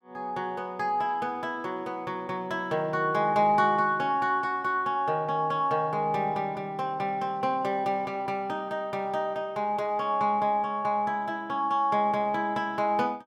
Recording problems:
none

